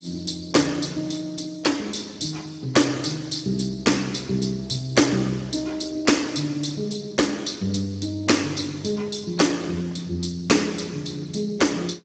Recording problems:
lossy codec; Speex, log-spectral distance 8 dB, nothing above 7.6 kHz

